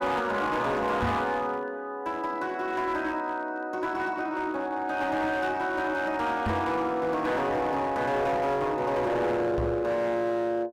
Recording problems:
distorted audio; hard clipping, uneven, signal-to-distortion ratio 10 dB
microphone thump; at 1 s, at 6.5 s and at 9.5 s; peak +2 dB vs average level

